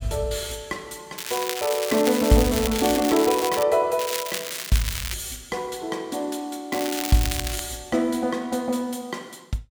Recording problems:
crackle; from 1 to 3.5 s, from 4 to 5 s and at 6.5 s; loose cable, SNR 5 dB

